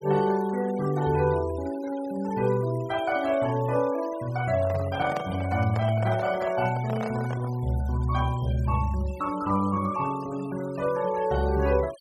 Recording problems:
denoising artefacts; signal-to-artefact ratio 19 dB
handling noise; from 4.5 to 7.5 s; peak -3 dB vs average level

